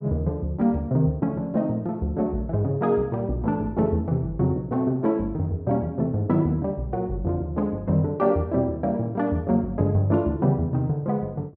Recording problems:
low-pass filter; nothing above 8 kHz

